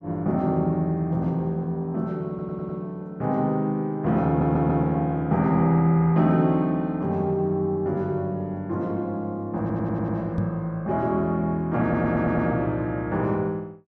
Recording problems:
audio stuttering; 4 times, first at 2.5 s
microphone thump; at 10 s; peak +2 dB vs average level

